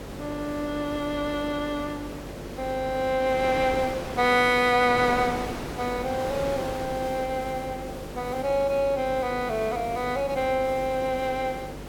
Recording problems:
electrical hum; 50 Hz, harmonics up to 600 Hz, SNR 15 dB
background hiss; SNR 17 dB
wind noise; below 1.5 kHz, SNR 12 dB

